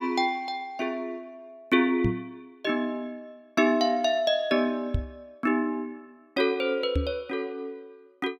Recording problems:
microphone thump; at 2 s, at 5 s and at 7 s; peak +4 dB vs average level

